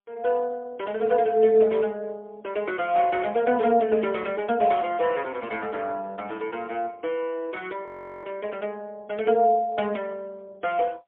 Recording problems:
telephone audio; 240 Hz to 3.3 kHz, AMR-NB, then MP3
audio freezing; at 8 s

